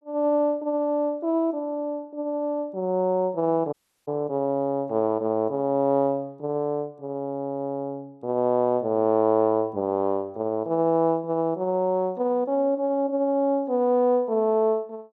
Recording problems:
dropout; at 3.5 s

